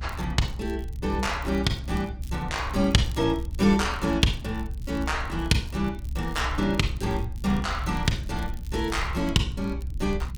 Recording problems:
rumble; below 66 Hz, strongest tone 64 Hz, SNR 7 dB
crackle; vinyl, SNR 26 dB

